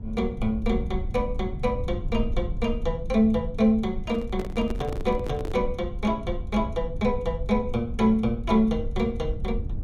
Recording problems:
rumble; below 80 Hz, SNR 8 dB
handling noise; from 4 to 5.5 s; peak -5 dB vs average level

